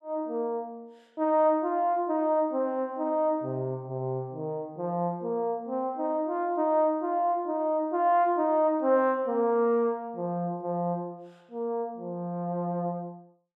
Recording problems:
none

